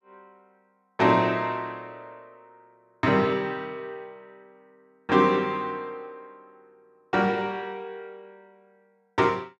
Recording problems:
none

